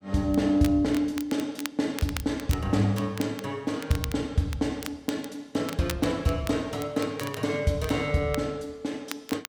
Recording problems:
crackle; vinyl, SNR 14 dB

